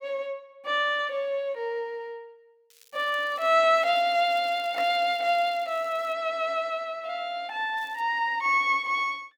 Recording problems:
crackle; at 2.5 s, from 4 to 6 s and at 8 s; loose cable, SNR 29 dB

